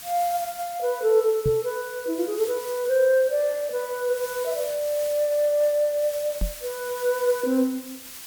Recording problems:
background hiss; slope +2 dB per octave, SNR 14 dB
knock on the microphone; at 1.5 s and at 6.5 s; peak 0 dB vs average level

